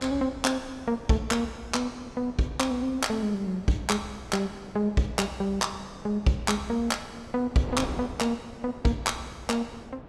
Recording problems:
wind on the microphone; below 660 Hz, SNR 16 dB

